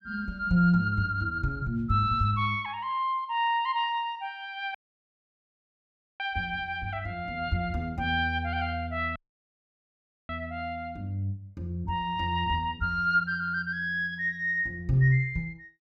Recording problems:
audio cutting out; at 5 s for 1.5 s and at 9 s for 1 s

